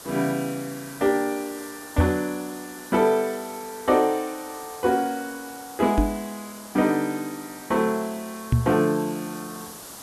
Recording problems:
hiss; SNR 15 dB
microphone bump; at 2 s, at 6 s and at 8.5 s; peak +8 dB vs average level

